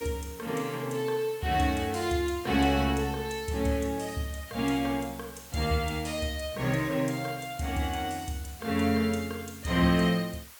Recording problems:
background hiss; SNR 18 dB

